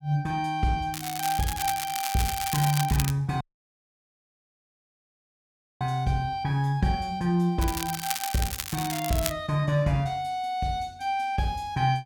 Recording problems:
crackle; from 1 to 3 s and from 7.5 to 9.5 s; loose cable, SNR 5 dB
audio cutting out; at 3.5 s for 2.5 s

